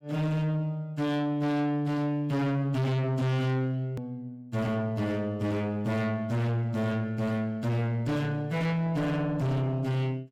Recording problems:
distorted audio; soft clipping, signal-to-distortion ratio 7 dB
edit click; at 4 s

